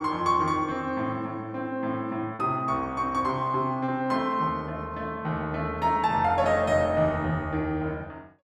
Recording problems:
packet loss; 1% of the sound replaced, filled with repeated pitch periods

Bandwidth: 14 kHz